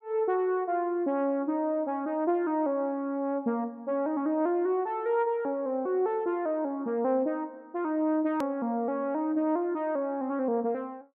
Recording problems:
click at an edit; at 8.5 s

